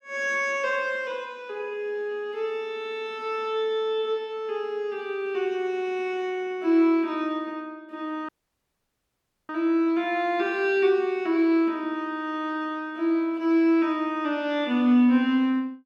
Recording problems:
dropout; at 8.5 s for 1 s

